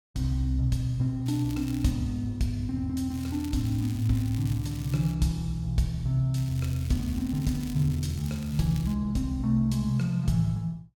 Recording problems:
crackling; at 1.5 s, from 3 to 5 s and from 6.5 to 9 s; loose cable, SNR 19 dB

